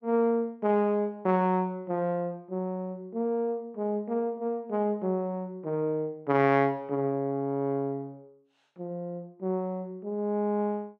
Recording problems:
none

